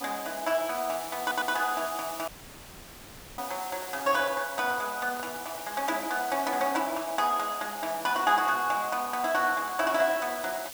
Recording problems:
hiss; SNR 11 dB
stutter; at 1 s
audio cutting out; at 2.5 s for 1 s
microphone handling noise; from 3.5 to 5.5 s; peak -10 dB vs average level

